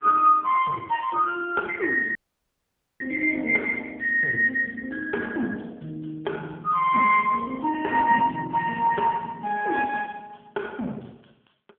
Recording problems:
telephone audio; 240 Hz to 2.8 kHz, AMR-NB
dropout; at 2 s for 1 s

